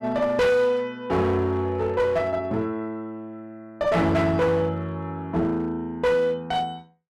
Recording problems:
distortion; hard clipping, uneven, signal-to-distortion ratio 6 dB

